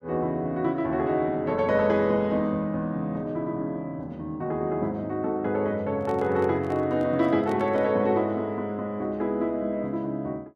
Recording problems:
microphone handling noise; from 6 to 8 s; peak -8 dB vs average level

